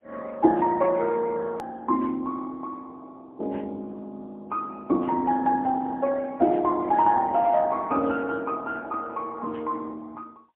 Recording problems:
telephone audio; 220 Hz to 2.8 kHz, AMR-NB, then MP3
hard cut with a click; at 1.5 s

